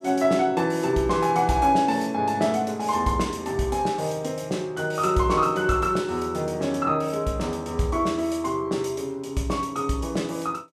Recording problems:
none

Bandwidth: 14.5 kHz